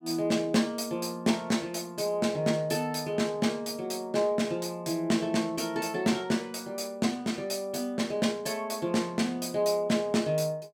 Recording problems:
none

